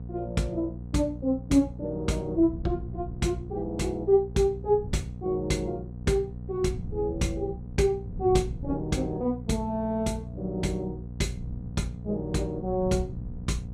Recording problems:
electrical hum; 60 Hz, harmonics up to 540 Hz, SNR 11 dB
wind noise; below 140 Hz, SNR 15 dB

